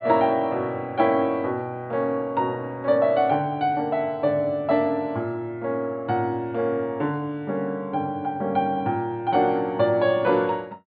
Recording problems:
treble missing; nothing above 4.7 kHz

